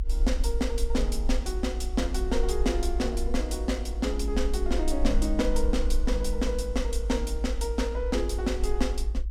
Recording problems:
rumble; below 54 Hz, SNR 1 dB

